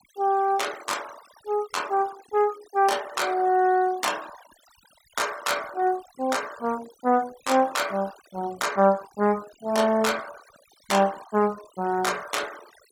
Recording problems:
noise reduction artefacts; signal-to-artefact ratio 19 dB

